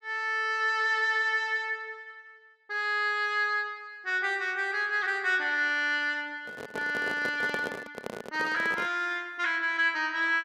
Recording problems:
handling noise; from 6.5 to 9 s; peak -3 dB vs average level

